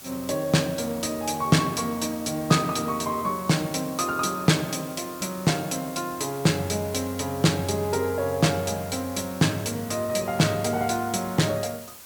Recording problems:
background hiss; slope -1 dB per octave, SNR 16 dB

